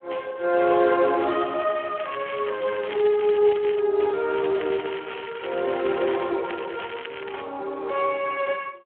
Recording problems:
phone line; 300 Hz to 3.3 kHz, Speex
crackle; from 2 to 4 s, from 4.5 to 6 s and at 6.5 s; loose cable, SNR 14 dB

